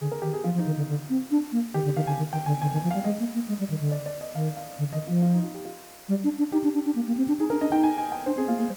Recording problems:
background hiss; slope -2 dB per octave, SNR 18 dB

